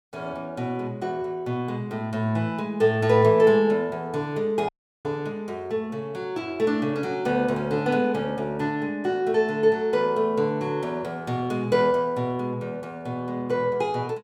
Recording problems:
audio cutting out; at 4.5 s

